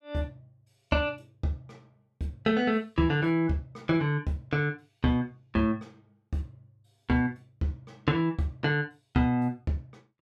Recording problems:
none

